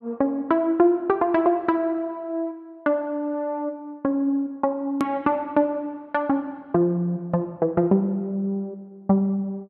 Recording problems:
hard cut with a click; at 5 s

